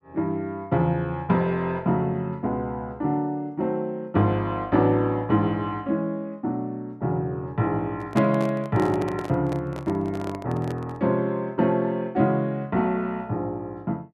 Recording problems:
handling noise; from 8 to 11 s; peak -1 dB vs average level

